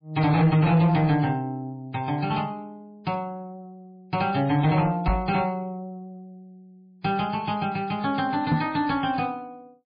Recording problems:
lossy codec; MP3, log-spectral distance 2 dB, nothing above 4.6 kHz
distortion; soft clipping, signal-to-distortion ratio 11 dB
microphone thump; at 5 s and at 8.5 s; peak +5 dB vs average level

